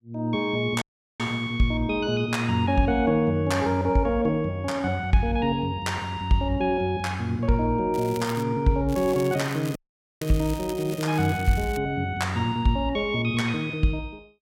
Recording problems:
audio cutting out; at 1 s and at 10 s
crackle; at 8 s and from 9 to 12 s; loose cable, SNR 17 dB

